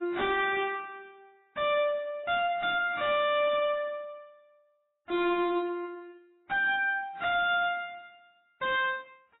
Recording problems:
lossy codec; AAC, then MP3, log-spectral distance 3 dB, nothing above 3.2 kHz
distortion; hard clipping, uneven, signal-to-distortion ratio 7 dB

